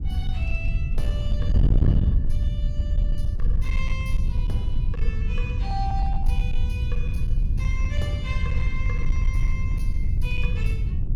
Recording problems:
distortion; hard clipping, signal-to-distortion ratio 12 dB
low-frequency rumble; below 40 Hz, SNR -4 dB
wind noise; below 94 Hz, SNR -11 dB

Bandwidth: 18 kHz